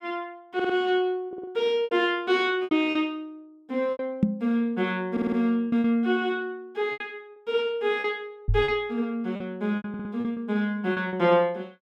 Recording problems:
packet loss; 9% of the sound replaced, filled with repeated pitch periods
audio stuttering; 4 times, first at 0.5 s
knock on the microphone; at 4 s and at 8.5 s; peak +9 dB vs average level

